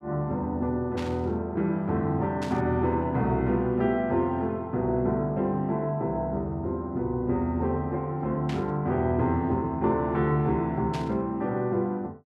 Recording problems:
static burst; 4 times, first at 1 s; peak -7 dB vs average level

